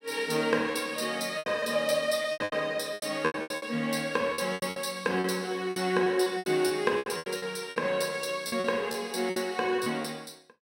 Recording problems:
lost packets; 15% of the sound replaced, filled with repeated pitch periods

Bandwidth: 16 kHz